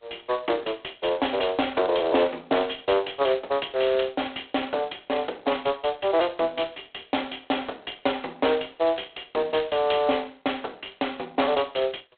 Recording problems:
phone line; 300 Hz to 3.6 kHz, G.726

